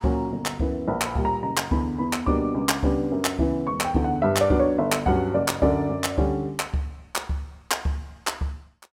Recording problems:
none

